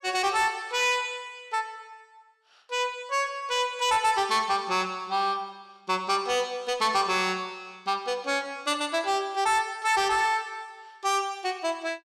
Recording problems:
distortion; soft clipping, signal-to-distortion ratio 11 dB

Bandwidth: 14 kHz